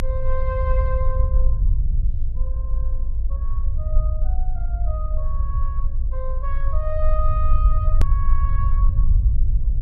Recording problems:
hum; 60 Hz, harmonics up to 660 Hz, SNR 18 dB
rumble; below 54 Hz, strongest tone 20 Hz, SNR -10 dB
edit click; at 8 s

